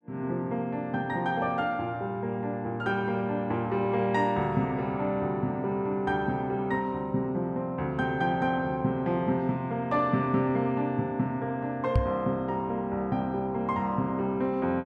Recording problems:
microphone thump; at 12 s; peak +7 dB vs average level

